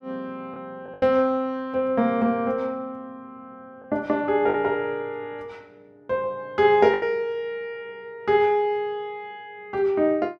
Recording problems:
lost packets; 3% of the sound replaced, filled with the last packet

